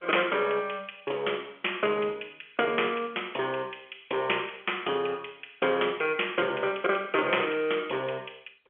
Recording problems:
phone line; 320 Hz to 3.4 kHz, G.711

